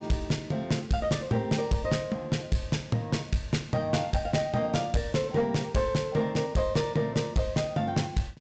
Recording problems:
treble missing; nothing above 8 kHz
distorted audio; hard clipping, uneven, signal-to-distortion ratio 11 dB

